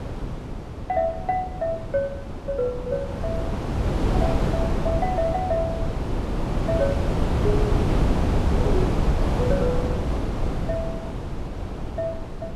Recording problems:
wind on the microphone; below 330 Hz, SNR -2 dB

